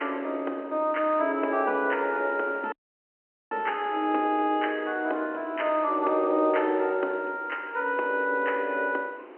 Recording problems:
phone line; 240 Hz to 3.1 kHz, G.711
wind noise; below 1 kHz, SNR 21 dB
audio cutting out; at 2.5 s for 1 s

